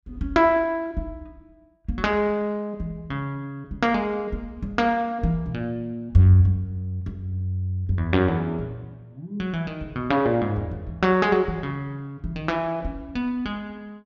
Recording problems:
none

